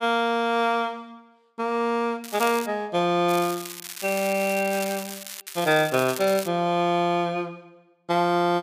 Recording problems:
crackle; at 2 s, from 3.5 to 5.5 s and from 5.5 to 6.5 s; loose cable, SNR 12 dB

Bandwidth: 15 kHz